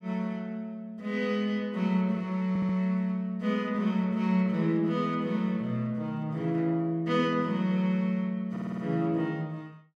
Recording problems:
stutter; at 2.5 s and at 8.5 s

